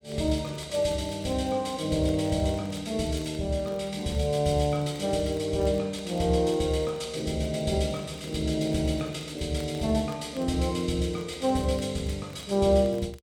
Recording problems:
crackling; vinyl, SNR 27 dB

